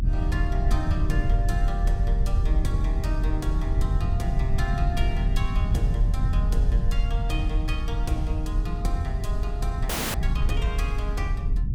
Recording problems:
rumble; below 78 Hz, strongest tone 40 Hz, SNR -7 dB
wind on the microphone; below 140 Hz, SNR 12 dB
audio freezing; at 10 s

